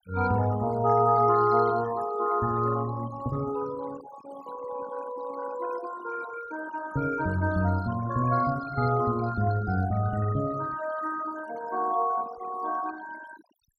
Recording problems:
denoising artefacts; signal-to-artefact ratio 15 dB

